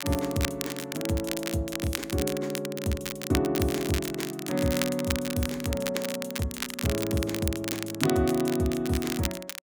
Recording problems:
crackling; vinyl, SNR 5 dB

